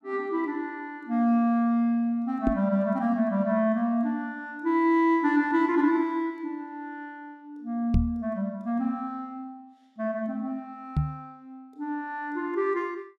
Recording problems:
knock on the microphone; at 2.5 s, at 8 s and at 11 s; peak +6 dB vs average level

